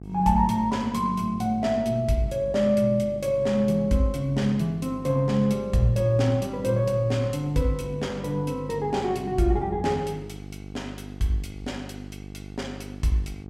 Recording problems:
hum; 50 Hz, harmonics up to 850 Hz, SNR 16 dB

